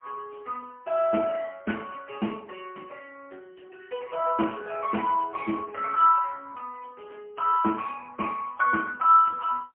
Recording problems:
phone line; 240 Hz to 3 kHz, AMR-NB, then MP3

